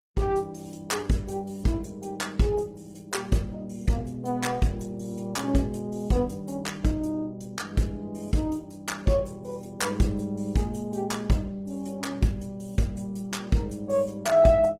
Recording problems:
lossy compression; Opus, log-spectral distance 3 dB, nothing above 18.3 kHz

